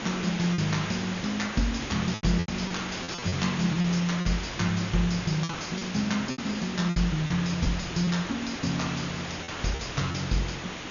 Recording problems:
low-pass filter; nothing above 6.9 kHz
hiss; slope -3 dB per octave, SNR 6 dB
packet loss; 8% of the sound replaced, filled with repeated pitch periods

